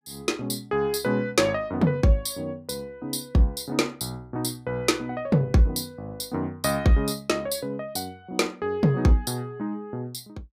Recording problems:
none

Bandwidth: 15.5 kHz